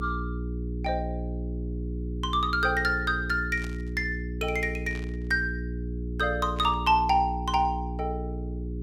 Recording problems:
hum; 60 Hz, harmonics up to 420 Hz, SNR 6 dB
static burst; at 3.5 s, at 5 s and at 6.5 s; peak -12 dB vs average level

